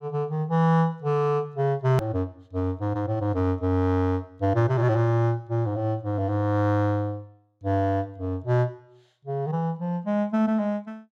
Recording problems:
edit click; at 2 s

